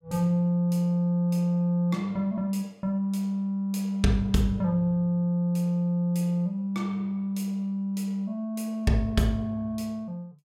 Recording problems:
none

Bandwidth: 16 kHz